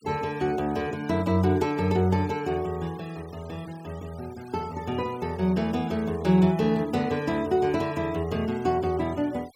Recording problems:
noise reduction artefacts; signal-to-artefact ratio 23 dB

